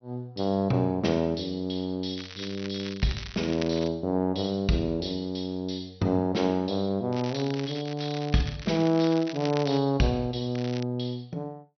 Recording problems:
treble missing; nothing above 6 kHz
crackle; from 2 to 4 s, from 7 to 10 s and at 11 s; loose cable, SNR 14 dB

